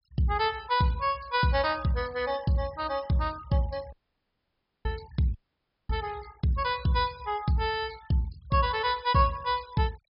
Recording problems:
treble missing; nothing above 5.5 kHz
denoising artefacts; signal-to-artefact ratio 23 dB
dropout; at 4 s for 1 s and at 5.5 s for 0.5 s

